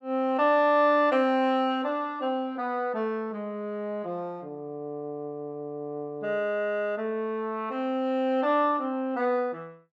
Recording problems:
none

